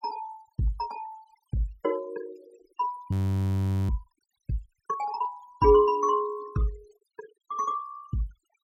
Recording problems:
denoising artefacts; signal-to-artefact ratio 21 dB
frozen audio; at 3 s for 1 s

